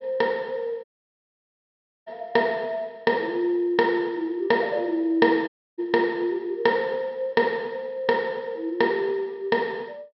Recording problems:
low-pass filter; nothing above 5.4 kHz
dropout; at 1 s for 1 s and at 5.5 s

